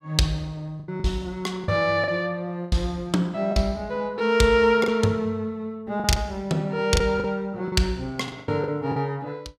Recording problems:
lost packets; 8% of the sound replaced, filled with the last packet

